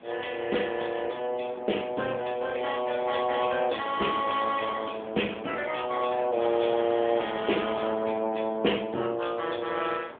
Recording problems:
phone line; 240 Hz to 3.4 kHz, AMR-NB
wind noise; below 1.1 kHz, SNR 17 dB

